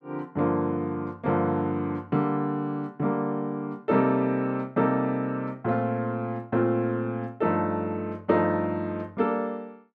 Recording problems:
none

